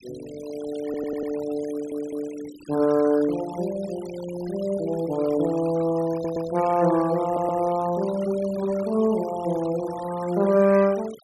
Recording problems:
noise reduction artefacts; signal-to-artefact ratio 18 dB
stutter; 4 times, first at 1 s

